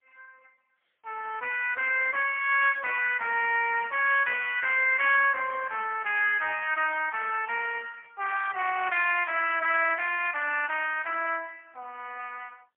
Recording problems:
phone line; 410 Hz to 3.3 kHz, AMR-NB, then MP3

